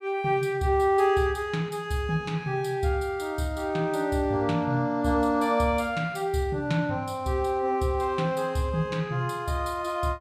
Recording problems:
none

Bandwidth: 14.5 kHz